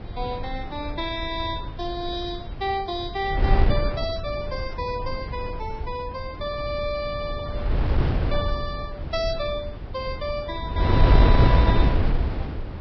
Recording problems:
codec artefacts; Vorbis, log-spectral distance 2 dB, nothing above 4.8 kHz
wind noise; below 130 Hz, SNR -4 dB

